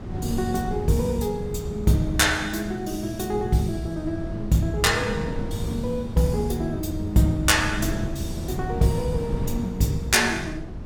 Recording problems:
wind noise; below 210 Hz, SNR 9 dB

